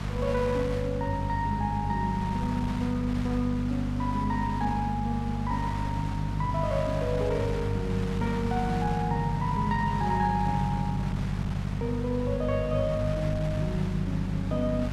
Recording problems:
mains hum; 50 Hz, harmonics up to 450 Hz, SNR 3 dB
wind on the microphone; below 1.7 kHz, SNR 11 dB

